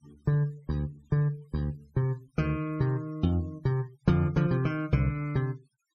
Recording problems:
denoising artefacts; signal-to-artefact ratio 28 dB

